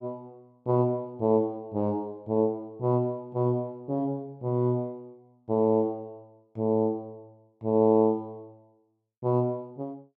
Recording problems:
none

